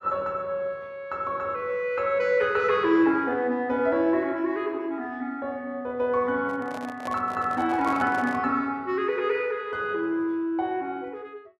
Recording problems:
microphone handling noise; from 6.5 to 8.5 s; peak -5 dB vs average level

